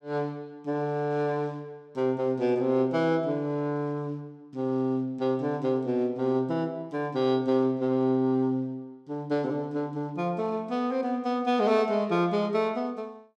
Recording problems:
none

